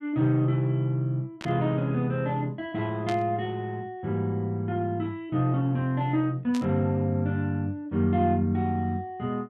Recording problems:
static burst; at 1.5 s, at 3 s and at 6.5 s; peak -6 dB vs average level

